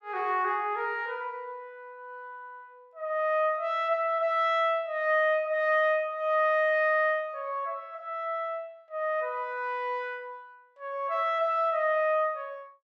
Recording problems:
none

